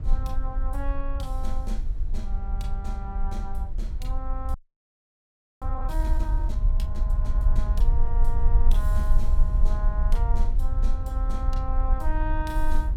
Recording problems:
low-frequency rumble; below 48 Hz, SNR -10 dB
frozen audio; at 4.5 s for 1 s

